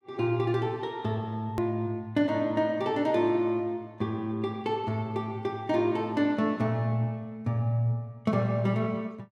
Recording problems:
click at an edit; at 1.5 s

